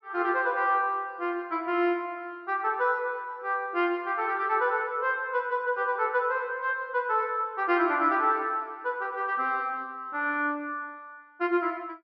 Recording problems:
treble missing; nothing above 5.8 kHz

